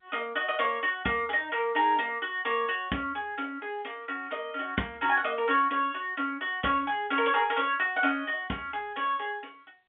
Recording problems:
phone line; 150 Hz to 3.5 kHz, G.711

